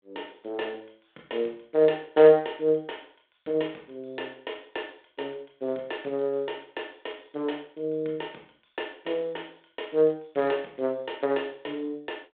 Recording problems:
phone line; 320 Hz to 3.6 kHz, G.726

